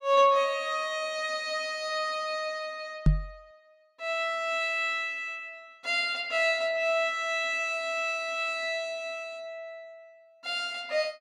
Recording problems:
knock on the microphone; at 3 s; peak +9 dB vs average level

